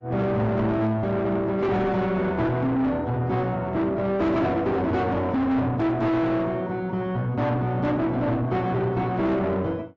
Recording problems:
codec artefacts; AAC, log-spectral distance 2 dB, nothing above 7.6 kHz
distorted audio; soft clipping, signal-to-distortion ratio 8 dB

